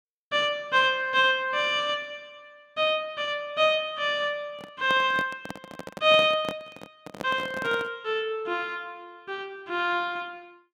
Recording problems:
handling noise; from 4.5 to 8 s; peak -4 dB vs average level

